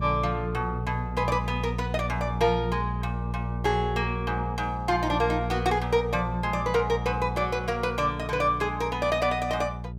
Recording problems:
hum; 60 Hz, harmonics up to 420 Hz, SNR 5 dB

